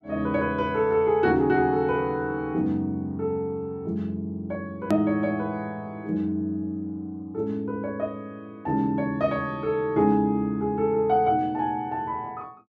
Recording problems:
edit click; at 5 s

